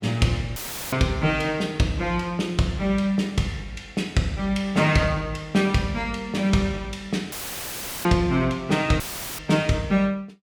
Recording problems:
audio cutting out; at 0.5 s, at 7.5 s for 0.5 s and at 9 s; filled with static

